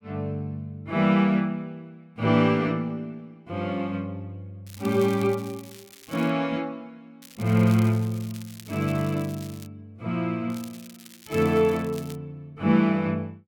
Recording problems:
crackle; from 4.5 to 6.5 s, from 7 to 9.5 s and from 11 to 12 s; loose cable, SNR 21 dB

